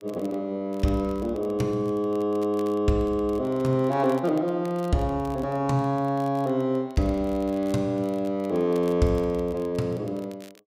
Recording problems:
crackling; vinyl, SNR 28 dB

